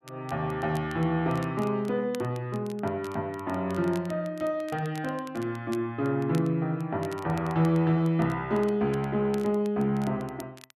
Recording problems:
crackle; vinyl, SNR 23 dB

